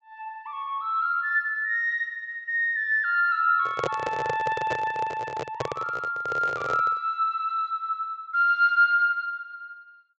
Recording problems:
treble cut off; nothing above 8 kHz
microphone handling noise; from 3.5 to 7 s; peak 0 dB vs average level

